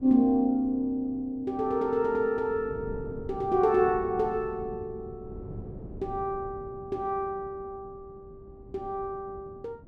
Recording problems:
wind on the microphone; below 250 Hz, SNR 17 dB

